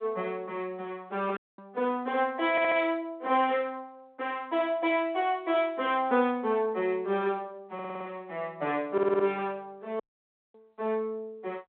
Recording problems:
telephone audio; 320 Hz to 3.6 kHz, G.726
audio cutting out; at 1.5 s and at 10 s for 0.5 s
audio stuttering; at 2.5 s, at 7.5 s and at 9 s

